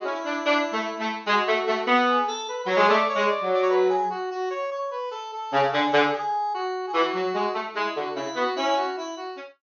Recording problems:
low-pass filter; nothing above 6.7 kHz

